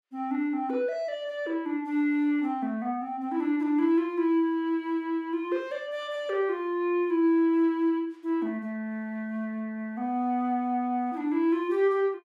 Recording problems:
none

